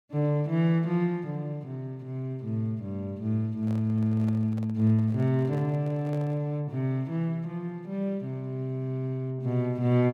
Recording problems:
handling noise; from 3.5 to 6.5 s; peak -11 dB vs average level

